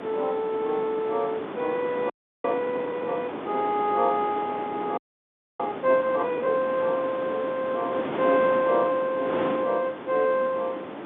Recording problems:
telephone audio; 240 Hz to 3.7 kHz, G.711
wind on the microphone; below 980 Hz, SNR 8 dB
audio freezing; at 2 s and at 5 s for 0.5 s

